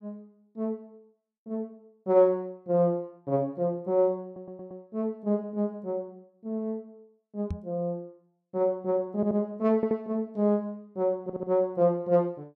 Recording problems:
stutter; 4 times, first at 4.5 s
microphone thump; at 7.5 s; peak -2 dB vs average level

